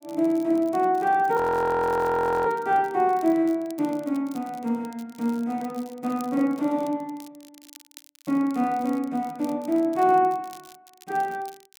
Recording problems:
crackle; vinyl, SNR 26 dB
audio freezing; at 1.5 s for 1 s

